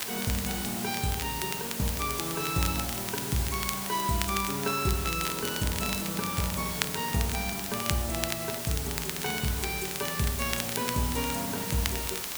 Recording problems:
background hiss; slope -1 dB per octave, SNR 2 dB
crackling; vinyl, SNR 6 dB

